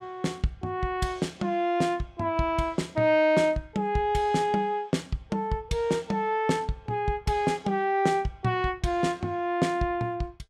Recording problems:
none

